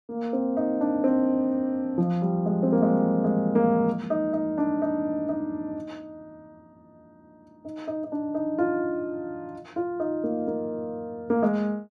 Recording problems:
none

